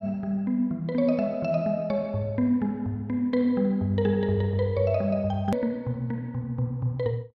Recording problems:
click at an edit; at 5.5 s

